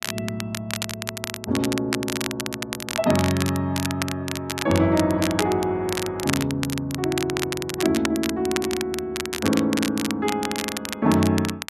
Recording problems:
crackling; vinyl, SNR 6 dB

